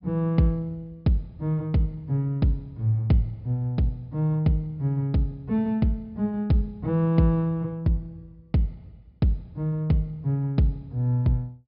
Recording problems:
treble missing; nothing above 5.5 kHz

